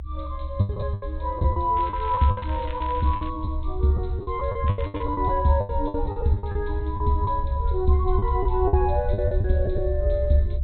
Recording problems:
low-pass filter; nothing above 4 kHz
low-frequency rumble; below 72 Hz, SNR 4 dB
lost packets; 13% of the sound replaced, filled with the last packet
crackling; from 2 to 3.5 s and at 4.5 s; loose cable, SNR 20 dB

